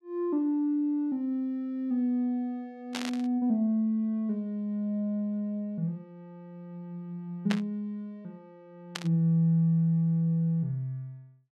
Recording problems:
burst of static; at 3 s, at 7.5 s and at 9 s; peak 0 dB vs average level

